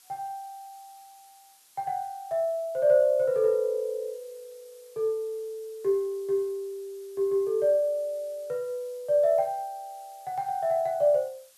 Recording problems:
background hiss; slope +2 dB per octave, SNR 27 dB

